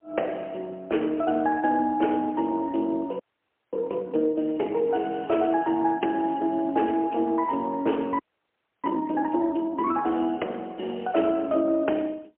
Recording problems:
telephone audio; 260 Hz to 3.1 kHz, AMR-NB, then MP3
audio freezing; at 3 s for 0.5 s and at 8 s for 0.5 s

